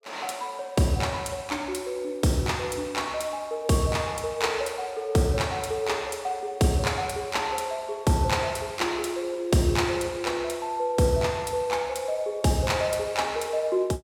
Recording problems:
none

